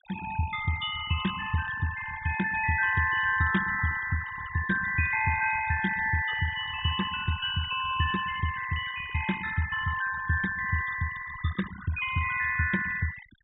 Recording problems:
low-pass filter; nothing above 4 kHz
noise reduction artefacts; signal-to-artefact ratio 11 dB

